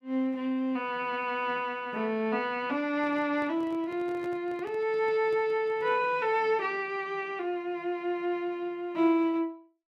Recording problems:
handling noise; from 3 to 6 s; peak -10 dB vs average level

